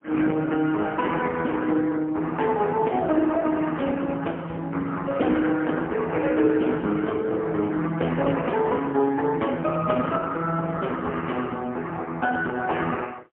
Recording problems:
phone line; 170 Hz to 3.3 kHz, AMR-NB, then MP3

